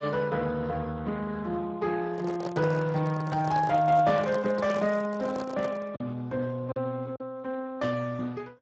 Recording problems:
lossy codec; Speex, log-spectral distance 3 dB
packet loss; 1.4% of the sound replaced, filled with silence
handling noise; from 2 to 6 s; peak -3 dB vs average level

